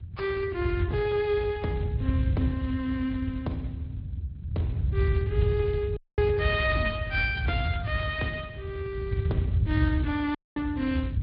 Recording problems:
low-pass filter; nothing above 4.4 kHz
lossy compression; Speex, log-spectral distance 2 dB
rumble; below 110 Hz, SNR 0 dB
audio cutting out; at 6 s and at 10 s

